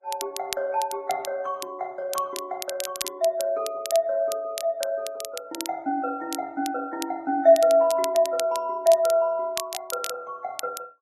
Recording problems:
codec artefacts; Vorbis, log-spectral distance 2 dB
crackling; vinyl, SNR 11 dB

